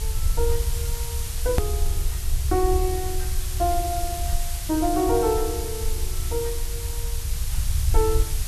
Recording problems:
hiss; slope +1 dB per octave, SNR 7 dB
rumble; below 70 Hz, strongest tone 22 Hz, SNR 2 dB
click at an edit; at 1.5 s

